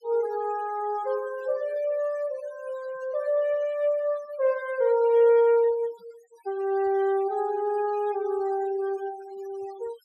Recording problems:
denoising artefacts; signal-to-artefact ratio 22 dB

